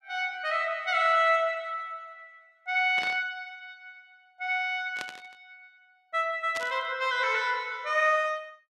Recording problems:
static burst; at 3 s, at 5 s and at 6.5 s; peak -6 dB vs average level

